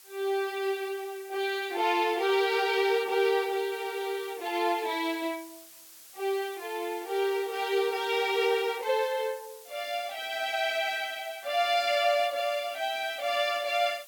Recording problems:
hiss; slope +2 dB per octave, SNR 20 dB

